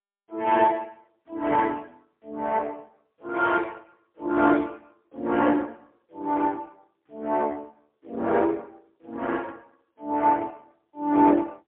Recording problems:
telephone audio; 240 Hz to 3.5 kHz, AMR-NB, then MP3

